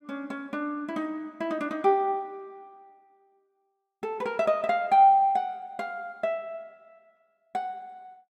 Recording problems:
none

